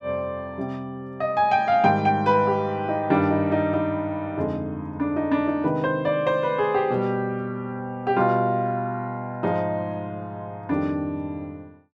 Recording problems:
none

